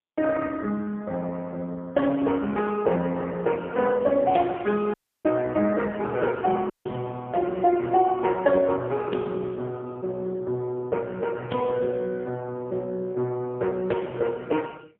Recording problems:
telephone audio; 150 Hz to 3.3 kHz, AMR-NB, then MP3
dropout; at 5 s and at 6.5 s

